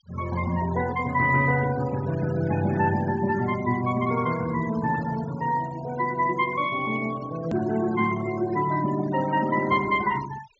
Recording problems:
treble missing; nothing above 8 kHz
noise reduction artefacts; signal-to-artefact ratio 16 dB
click at an edit; at 7.5 s

